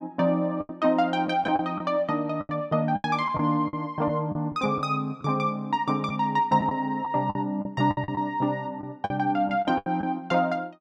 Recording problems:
packet loss; 9% of the sound replaced, filled with the last packet

